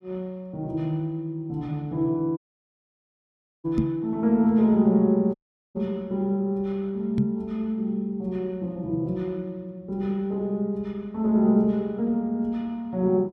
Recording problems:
dropout; at 2.5 s for 1.5 s and at 5.5 s
knock on the microphone; at 4 s and at 7 s; peak +6 dB vs average level

